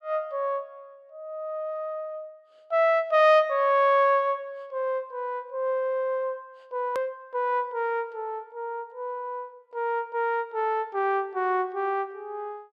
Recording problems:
click at an edit; at 7 s

